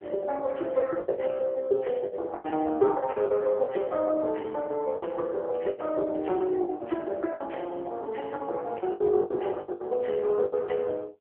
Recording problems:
phone line; 320 Hz to 3.1 kHz, AMR-NB
lost packets; 13% of the sound replaced, filled with the last packet

